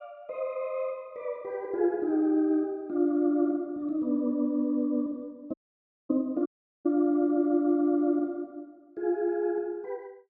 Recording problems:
dropout; at 5.5 s for 0.5 s and at 6.5 s

